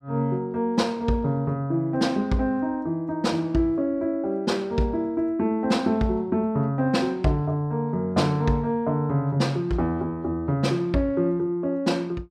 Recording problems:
none

